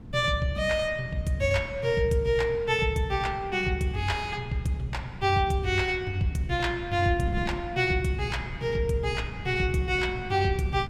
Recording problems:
wind noise; below 200 Hz, SNR 14 dB

